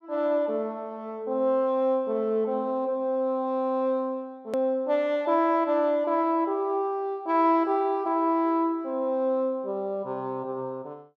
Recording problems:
click at an edit; at 4.5 s

